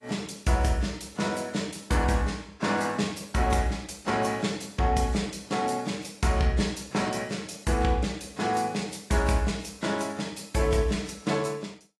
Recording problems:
codec artefacts; AAC, log-spectral distance 4 dB, nothing above 11.6 kHz

